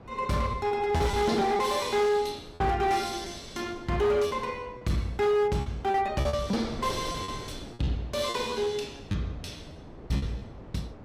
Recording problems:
distorted audio; hard clipping, signal-to-distortion ratio 12 dB
wind on the microphone; below 530 Hz, SNR 17 dB
lost packets; 8% of the sound replaced, filled with repeated pitch periods

